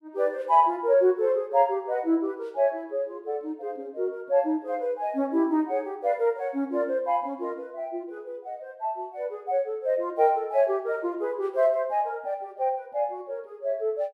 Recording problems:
none

